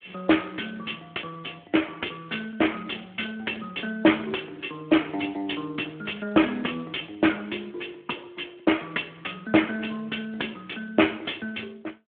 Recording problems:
phone line; 240 Hz to 3.4 kHz, Speex

